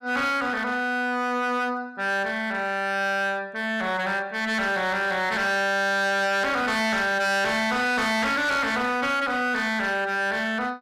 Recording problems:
distortion; hard clipping, signal-to-distortion ratio 8 dB

